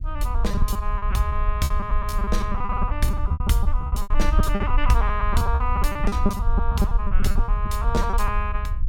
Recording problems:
rumble; below 62 Hz, SNR -2 dB
packet loss; 17% of the sound replaced, filled with repeated pitch periods

